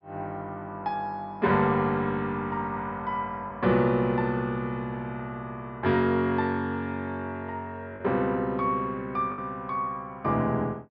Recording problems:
treble missing; nothing above 5.5 kHz
packet loss; 1.1% of the sound replaced, filled with the last packet

